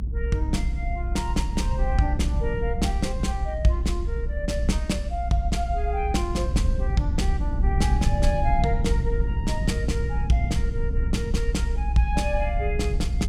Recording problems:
rumble; below 70 Hz, SNR -1 dB

